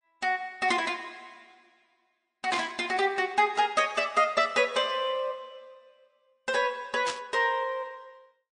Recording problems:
lossy codec; MP3, log-spectral distance 2 dB, nothing above 9.2 kHz
static burst; at 2.5 s and at 7 s; peak -2 dB vs average level

